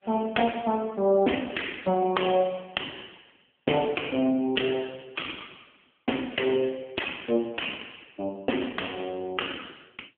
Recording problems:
telephone audio; 190 Hz to 3.2 kHz, AMR-NB

